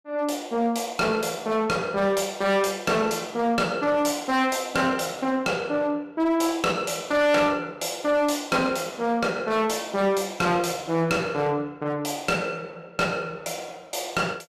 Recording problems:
distorted audio; hard clipping, uneven, signal-to-distortion ratio 11 dB

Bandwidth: 14.5 kHz